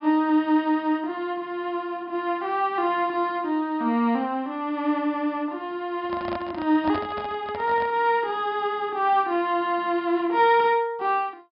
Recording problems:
low-pass filter; nothing above 5.5 kHz
handling noise; from 6 to 8 s; peak -5 dB vs average level

